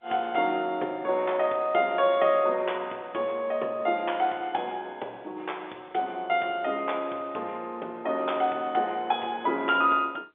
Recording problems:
telephone audio; 300 Hz to 3.6 kHz, G.711

